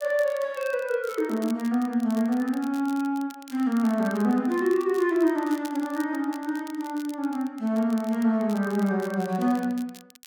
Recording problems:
crackling; vinyl, SNR 22 dB

